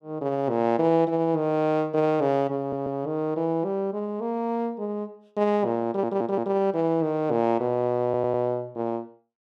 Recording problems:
audio stuttering; at 2.5 s, at 6 s and at 8 s

